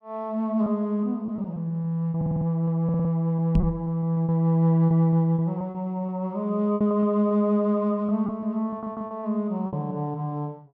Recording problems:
packet loss; 9% of the sound replaced, filled with repeated pitch periods
stutter; at 2 s, at 3 s and at 8.5 s
knock on the microphone; at 3.5 s; peak +6 dB vs average level

